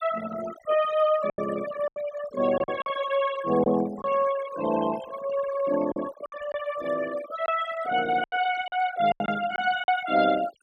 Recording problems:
noise reduction artefacts; signal-to-artefact ratio 14 dB
packet loss; 7% of the sound replaced, filled with silence

